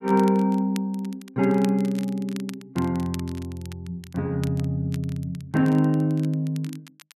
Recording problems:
crackle; vinyl, SNR 21 dB

